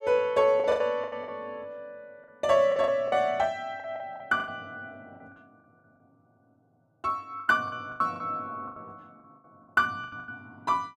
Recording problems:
packet loss; 13% of the sound replaced, filled with the last packet

